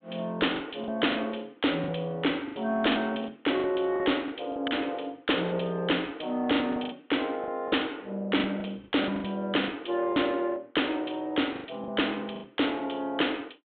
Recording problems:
low-pass filter; nothing above 4 kHz
distortion; soft clipping, signal-to-distortion ratio 12 dB
lost packets; 10% of the sound replaced, filled with the last packet

